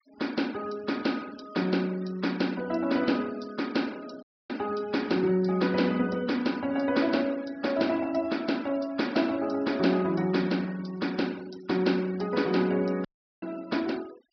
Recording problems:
treble missing; nothing above 5.5 kHz
noise reduction artefacts; signal-to-artefact ratio 22 dB
dropout; at 4 s and at 13 s

